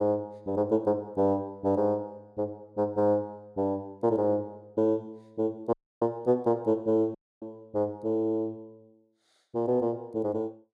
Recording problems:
dropout; at 5.5 s and at 7 s

